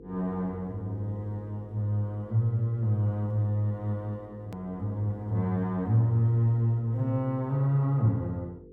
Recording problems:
electrical hum; 50 Hz, harmonics up to 500 Hz, SNR 22 dB
click at an edit; at 4.5 s

